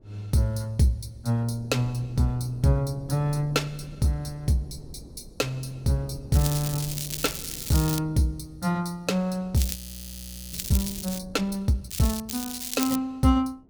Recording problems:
wind on the microphone; below 260 Hz, SNR 19 dB
crackle; 4 times, first at 6.5 s; loose cable, SNR 6 dB
frozen audio; at 10 s for 1 s

